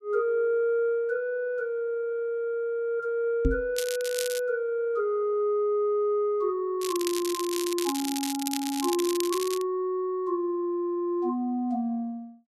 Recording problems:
microphone bump; at 3.5 s; peak +6 dB vs average level
crackle; at 4 s and from 7 to 9.5 s; loose cable, SNR 7 dB

